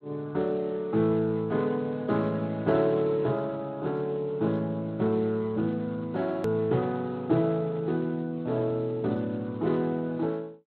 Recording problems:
lossy compression; Speex, log-spectral distance 2 dB, nothing above 13.1 kHz
edit click; at 6.5 s

